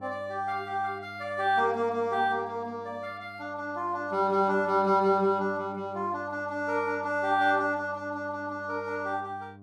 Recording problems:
hum; 50 Hz, harmonics up to 1.1 kHz, SNR 21 dB

